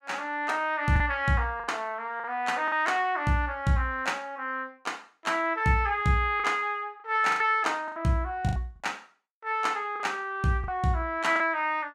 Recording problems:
packet loss; 5% of the sound replaced, filled with the last packet

